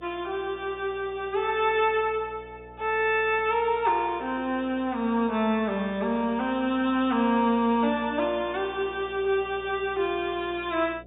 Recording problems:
low-pass filter; nothing above 4 kHz
hum; 60 Hz, harmonics up to 720 Hz, SNR 24 dB

